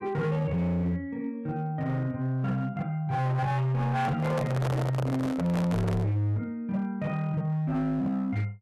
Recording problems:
distorted audio; hard clipping, signal-to-distortion ratio 8 dB
handling noise; from 4 to 6 s; peak 0 dB vs average level

